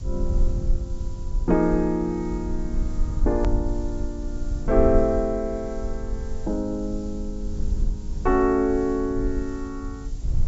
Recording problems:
treble missing; nothing above 8 kHz
hiss; SNR 27 dB
rumble; below 54 Hz, strongest tone 24 Hz, SNR 5 dB
edit click; at 3.5 s

